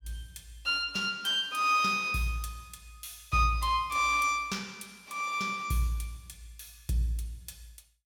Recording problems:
none

